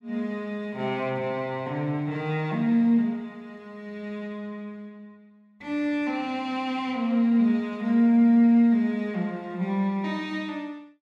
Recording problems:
none

